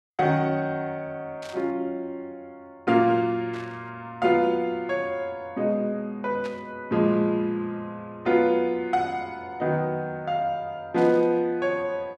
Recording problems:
burst of static; 4 times, first at 1.5 s; peak -12 dB vs average level

